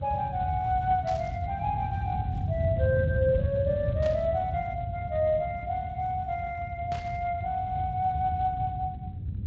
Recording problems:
lossy compression; Speex, log-spectral distance 2 dB
low-frequency rumble; below 140 Hz, SNR 4 dB
static burst; at 1 s, at 4 s and at 7 s; peak -11 dB vs average level

